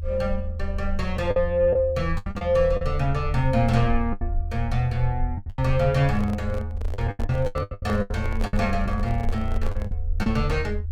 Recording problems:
rumble; below 80 Hz, SNR 5 dB
lost packets; 11% of the sound replaced, filled with the last packet
microphone handling noise; from 6 to 10 s; peak -5 dB vs average level

